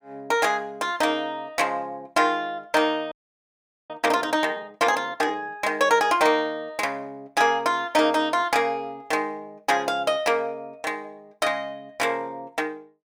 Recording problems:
audio freezing; at 3 s for 1 s

